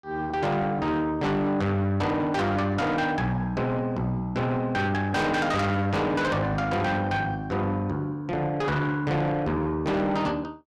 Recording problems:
distortion; soft clipping, signal-to-distortion ratio 7 dB

